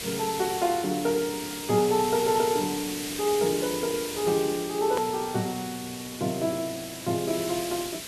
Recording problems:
hiss; SNR 7 dB
edit click; at 5 s

